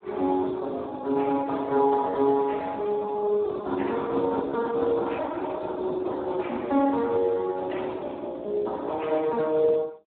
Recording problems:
phone line; 280 Hz to 3.4 kHz, Speex

